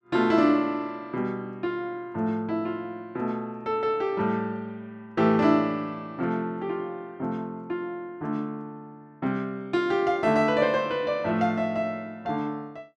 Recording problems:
none

